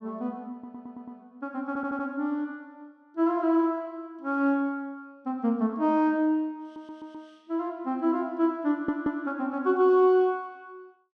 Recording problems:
stutter; 4 times, first at 0.5 s

